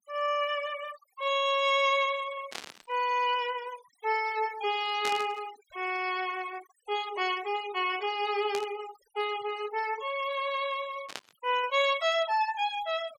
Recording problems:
denoising artefacts; signal-to-artefact ratio 16 dB
static burst; 4 times, first at 2.5 s; peak -2 dB vs average level

